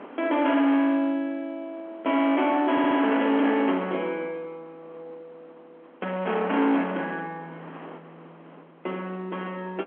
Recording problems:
telephone audio; 240 Hz to 3.3 kHz, G.711
distortion; hard clipping, signal-to-distortion ratio 9 dB
wind noise; below 1.1 kHz, SNR 20 dB
stutter; at 2.5 s

